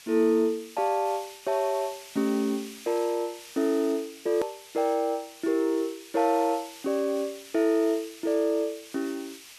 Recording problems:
hiss; SNR 17 dB
hard cut with a click; at 4.5 s

